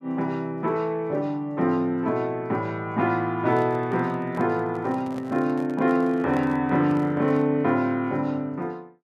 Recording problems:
handling noise; from 3.5 to 7.5 s; peak -8 dB vs average level

